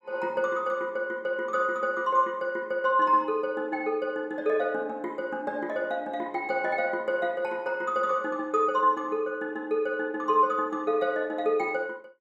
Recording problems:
none

